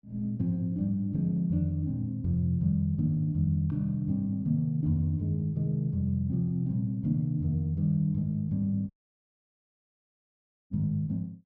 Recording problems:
audio cutting out; at 9 s for 2 s

